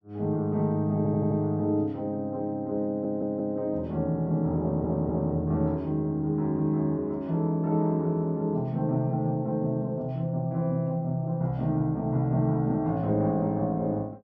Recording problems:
stutter; at 1 s, at 3 s and at 4.5 s

